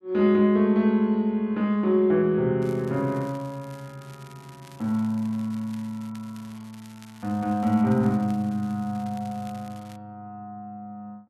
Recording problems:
crackling; from 2.5 to 10 s; loose cable, SNR 27 dB

